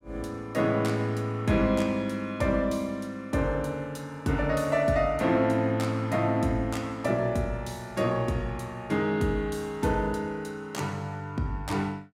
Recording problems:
none

